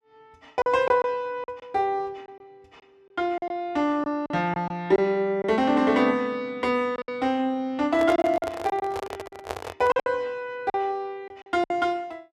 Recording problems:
packet loss; 9% of the sound replaced, filled with silence
microphone handling noise; from 8 to 10 s; peak 0 dB vs average level

